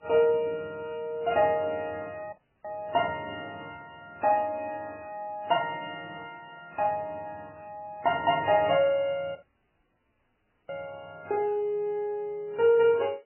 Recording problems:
lossy codec; MP3, then AAC, log-spectral distance 2 dB, nothing above 2.5 kHz
audio cutting out; at 2.5 s and at 9.5 s for 1.5 s

